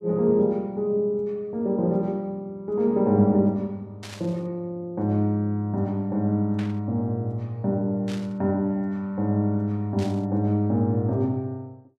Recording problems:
static burst; 4 times, first at 4 s; peak -11 dB vs average level

